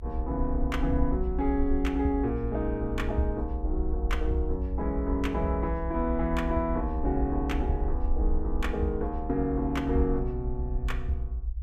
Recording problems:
low-frequency rumble; below 62 Hz, SNR 3 dB

